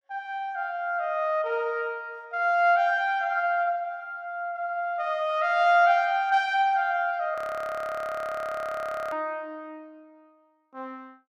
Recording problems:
frozen audio; at 7.5 s for 2 s

